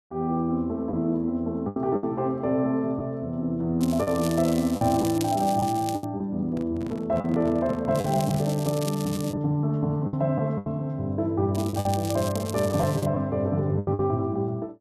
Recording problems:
packet loss; 6% of the sound replaced, filled with the last packet
crackling; from 4 to 6 s, from 8 to 9.5 s and from 12 to 13 s; loose cable, SNR 14 dB
microphone handling noise; from 6.5 to 8.5 s; peak -7 dB vs average level

